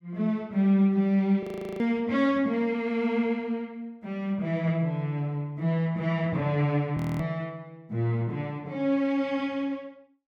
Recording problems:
frozen audio; at 1.5 s and at 7 s

